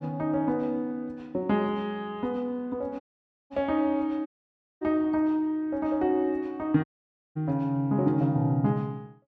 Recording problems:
audio cutting out; at 3 s for 0.5 s, at 4.5 s for 0.5 s and at 7 s for 0.5 s

